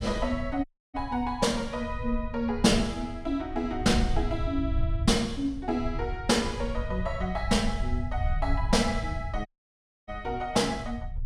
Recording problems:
rumble; below 82 Hz, SNR 6 dB
dropout; at 0.5 s and at 9.5 s for 0.5 s

